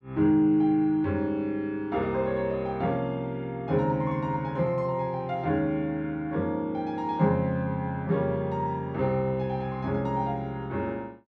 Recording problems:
none

